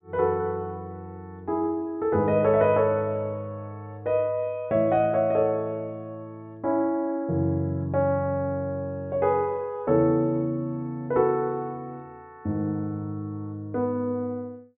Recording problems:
treble missing; nothing above 4 kHz

